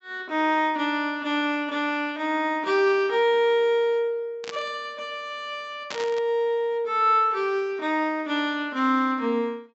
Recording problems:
low-pass filter; nothing above 7.7 kHz
static burst; at 4.5 s and at 6 s; peak -5 dB vs average level

